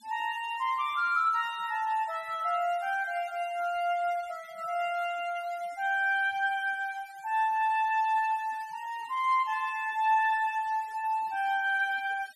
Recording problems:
noise reduction artefacts; signal-to-artefact ratio 24 dB

